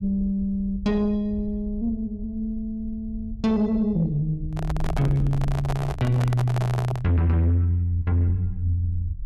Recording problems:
distortion; soft clipping, signal-to-distortion ratio 11 dB
low-frequency rumble; below 72 Hz, SNR 12 dB
handling noise; from 4.5 to 7 s; peak -2 dB vs average level

